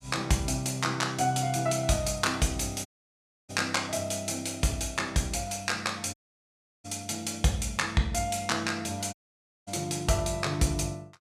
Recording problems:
dropout; at 3 s for 0.5 s, at 6 s for 0.5 s and at 9 s for 0.5 s

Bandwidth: 14 kHz